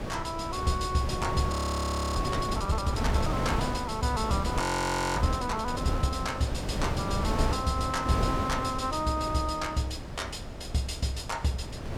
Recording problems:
wind on the microphone; below 540 Hz, SNR 3 dB
frozen audio; at 1.5 s for 0.5 s and at 4.5 s for 0.5 s

